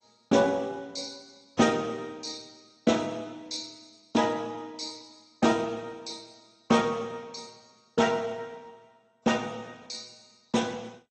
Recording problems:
codec artefacts; AAC, then MP2, log-spectral distance 5 dB, nothing above 8 kHz

